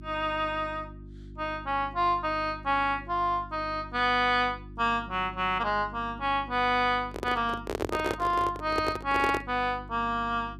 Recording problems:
hum; 50 Hz, harmonics up to 350 Hz, SNR 17 dB
handling noise; from 7 to 9.5 s; peak +1 dB vs average level

